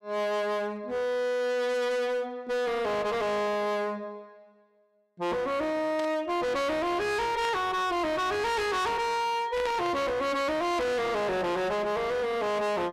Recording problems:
distorted audio; hard clipping, uneven, signal-to-distortion ratio 5 dB
static burst; at 6 s, at 7.5 s and at 9.5 s; peak -7 dB vs average level

